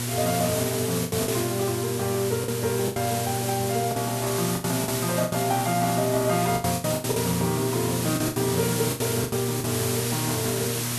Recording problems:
hum; 60 Hz, harmonics up to 600 Hz, SNR 5 dB
background hiss; slope -1 dB per octave, SNR 3 dB
packet loss; 10% of the sound replaced, filled with the last packet

